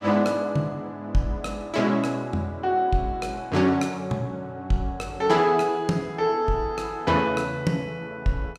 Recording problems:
none

